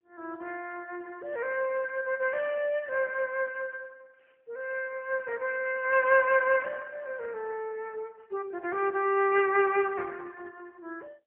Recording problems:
phone line; 340 Hz to 3.1 kHz, AMR-NB, then MP3

